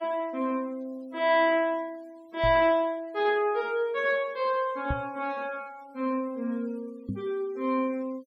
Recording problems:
noise reduction artefacts; signal-to-artefact ratio 27 dB
microphone bump; at 2.5 s, at 5 s and at 7 s; peak 0 dB vs average level

